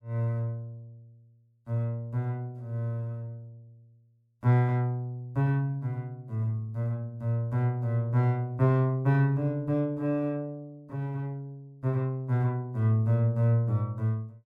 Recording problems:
none

